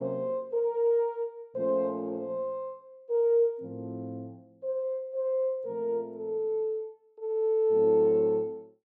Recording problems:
none

